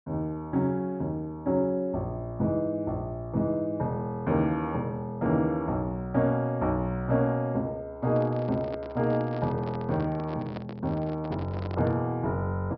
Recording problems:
treble cut off; nothing above 5.5 kHz
microphone handling noise; from 8 to 12 s; peak -6 dB vs average level

